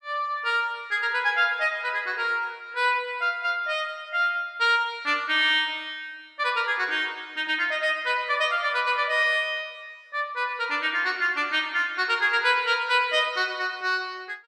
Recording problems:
none

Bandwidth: 13.5 kHz